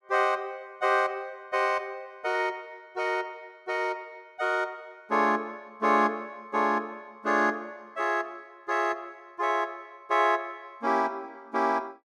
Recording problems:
none

